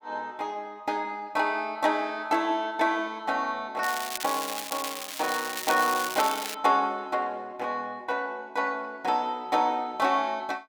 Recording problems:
crackling; from 4 to 6.5 s; loose cable, SNR 6 dB

